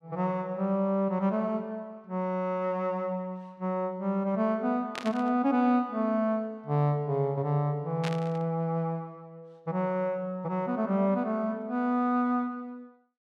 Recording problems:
burst of static; at 5 s and at 8 s; peak -2 dB vs average level

